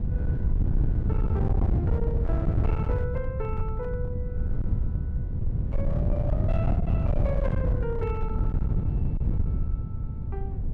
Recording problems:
distorted audio; hard clipping, signal-to-distortion ratio 11 dB
wind on the microphone; below 120 Hz, SNR -8 dB

